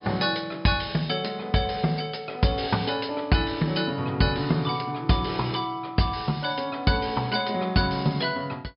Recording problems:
low-pass filter; nothing above 5.5 kHz

